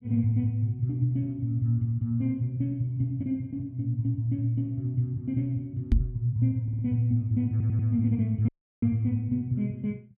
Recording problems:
microphone thump; at 6 s; peak +8 dB vs average level
stutter; at 6.5 s and at 7.5 s
dropout; at 8.5 s

